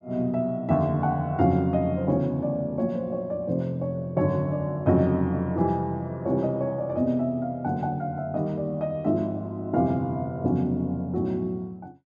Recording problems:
none

